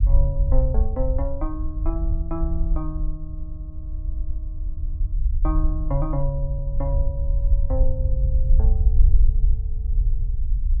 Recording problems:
low-frequency rumble; below 58 Hz, SNR -7 dB

